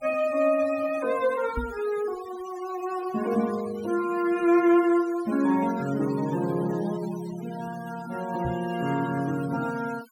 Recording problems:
noise reduction artefacts; signal-to-artefact ratio 17 dB
knock on the microphone; at 1.5 s and at 8.5 s; peak -2 dB vs average level

